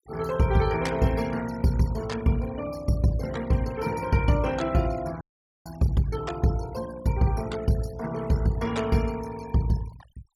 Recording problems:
denoising artefacts; signal-to-artefact ratio 17 dB
audio cutting out; at 5 s

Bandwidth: 17.5 kHz